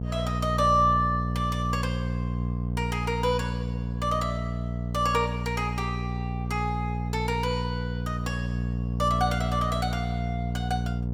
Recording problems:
electrical hum; 60 Hz, harmonics up to 720 Hz, SNR 1 dB

